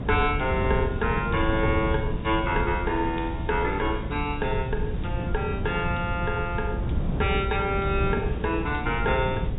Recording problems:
treble missing; nothing above 4 kHz
hum; 60 Hz, harmonics up to 540 Hz, SNR 10 dB
hiss; SNR 23 dB
low-frequency rumble; below 130 Hz, SNR 9 dB
wind noise; below 190 Hz, SNR 5 dB

